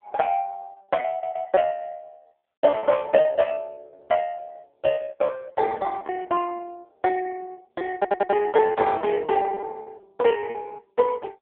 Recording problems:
phone line; 220 Hz to 2.9 kHz, AMR-NB
packet loss; 15% of the sound replaced, filled with repeated pitch periods
audio stuttering; at 1 s and at 8 s

